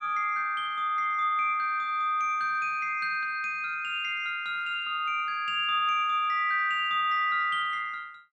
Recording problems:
none

